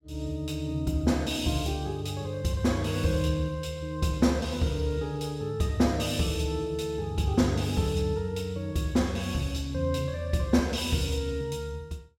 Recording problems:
none

